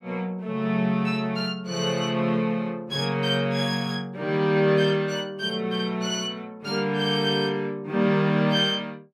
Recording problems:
none

